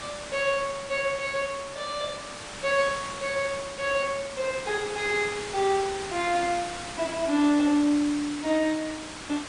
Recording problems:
lossy compression; MP3, log-spectral distance 7 dB, nothing above 8.2 kHz
hiss; slope -2 dB per octave, SNR 10 dB

